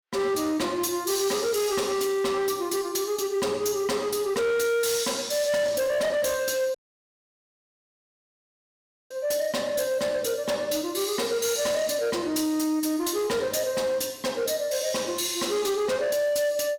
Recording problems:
distortion; hard clipping, signal-to-distortion ratio 11 dB
audio cutting out; at 7 s for 2.5 s

